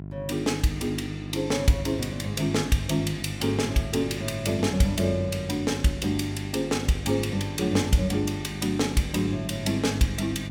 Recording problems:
electrical hum; 50 Hz, harmonics up to 700 Hz, SNR 10 dB

